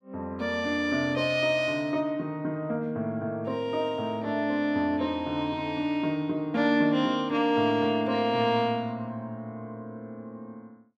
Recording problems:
none

